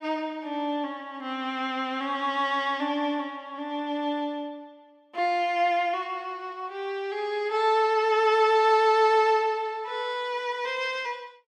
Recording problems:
none

